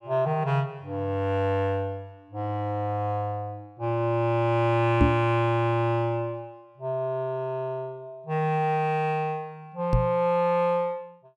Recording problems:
knock on the microphone; at 5 s and at 10 s; peak +8 dB vs average level

